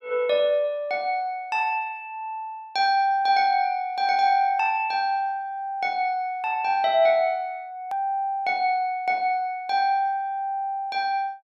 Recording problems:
click at an edit; at 8 s

